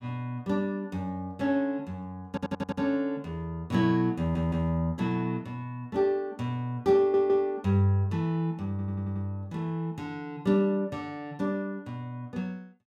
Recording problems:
stutter; 4 times, first at 2.5 s

